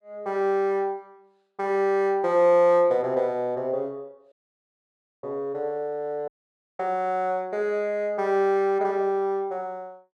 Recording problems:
audio cutting out; at 4.5 s for 1 s and at 6.5 s for 0.5 s

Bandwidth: 12 kHz